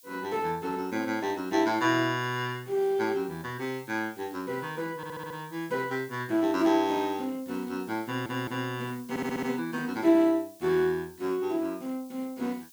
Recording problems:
background hiss; SNR 23 dB
audio stuttering; at 5 s, at 8 s and at 9 s

